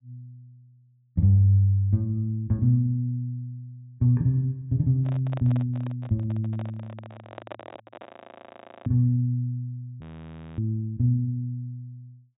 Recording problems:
treble cut off; nothing above 4 kHz
microphone handling noise; from 5 to 8 s; peak -9 dB vs average level
frozen audio; at 8 s for 1 s and at 10 s for 0.5 s

